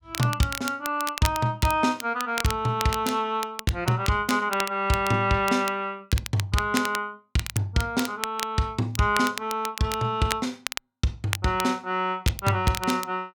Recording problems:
crackle; vinyl, SNR 9 dB

